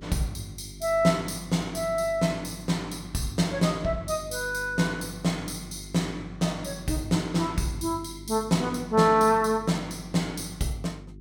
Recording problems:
electrical hum; 50 Hz, harmonics up to 400 Hz, SNR 17 dB

